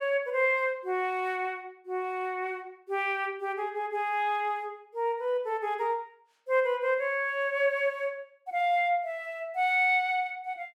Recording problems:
none

